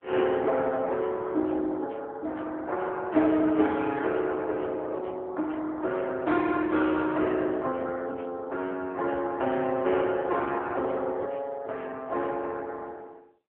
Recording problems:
telephone audio; 240 Hz to 3.6 kHz, AMR-NB

